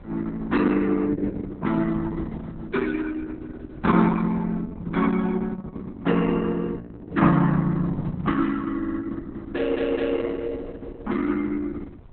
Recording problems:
lossy compression; Opus, log-spectral distance 3 dB, nothing above 4 kHz
wind on the microphone; below 190 Hz, SNR 20 dB
audio stuttering; at 9 s and at 9.5 s

